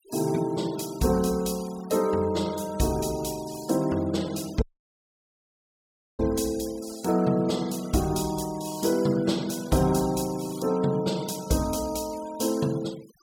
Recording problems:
denoising artefacts; signal-to-artefact ratio 18 dB
dropout; at 4.5 s for 1.5 s

